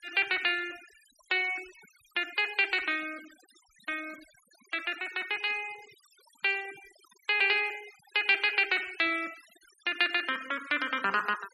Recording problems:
denoising artefacts; signal-to-artefact ratio 20 dB

